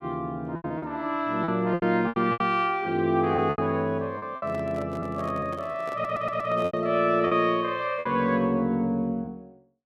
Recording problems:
packet loss; 10% of the sound replaced, filled with repeated pitch periods
handling noise; from 4.5 to 7 s; peak -10 dB vs average level
stutter; at 6 s

